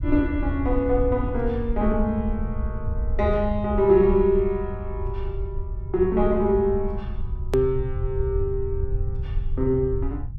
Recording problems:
low-frequency rumble; below 80 Hz, SNR 6 dB
edit click; at 7.5 s

